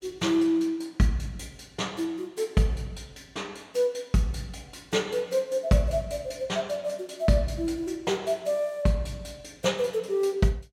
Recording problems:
none

